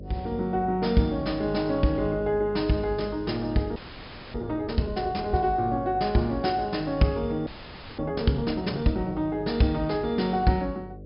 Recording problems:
low-pass filter; nothing above 5.5 kHz
hum; 50 Hz, harmonics up to 600 Hz, SNR 15 dB
audio freezing; at 4 s for 0.5 s and at 7.5 s for 0.5 s

